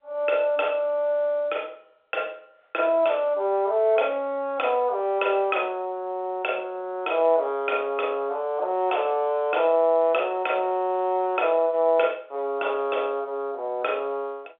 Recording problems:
telephone audio; 320 Hz to 3.6 kHz, G.711

